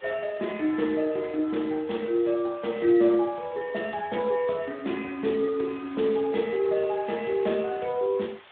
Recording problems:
phone line; 130 Hz to 3.6 kHz, Speex
background hiss; SNR 24 dB

